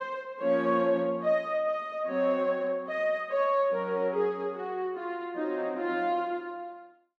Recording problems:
none

